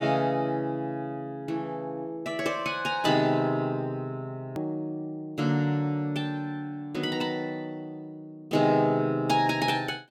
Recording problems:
hard cut with a click; at 4.5 s

